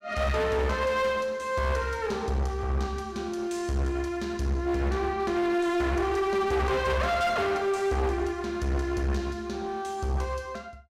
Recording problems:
distortion; hard clipping, uneven, signal-to-distortion ratio 7 dB

